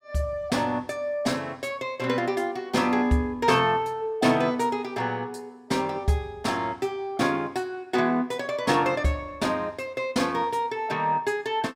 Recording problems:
none

